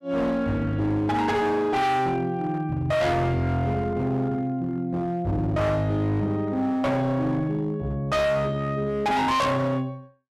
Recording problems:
distortion; hard clipping, signal-to-distortion ratio 7 dB

